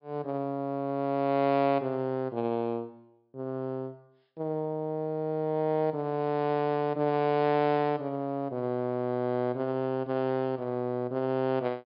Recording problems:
treble cut off; nothing above 5.5 kHz

